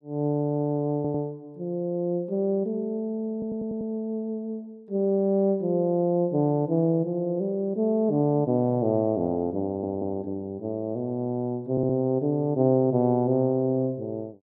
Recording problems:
stutter; 4 times, first at 1 s

